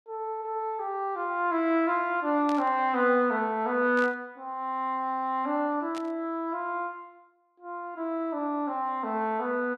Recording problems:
burst of static; at 2.5 s, at 4 s and at 6 s; peak -9 dB vs average level

